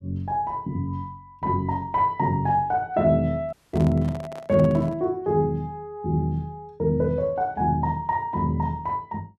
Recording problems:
microphone handling noise; from 3.5 to 5 s; peak -8 dB vs average level
audio cutting out; at 3.5 s

